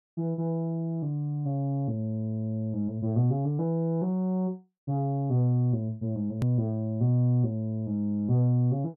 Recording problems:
click at an edit; at 6.5 s

